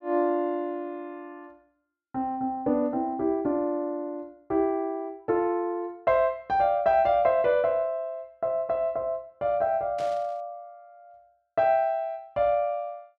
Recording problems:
burst of static; at 10 s; peak -14 dB vs average level

